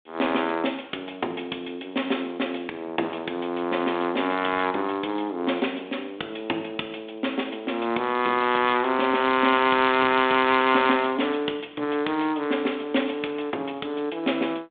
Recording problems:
telephone audio; 220 Hz to 3.6 kHz, G.726

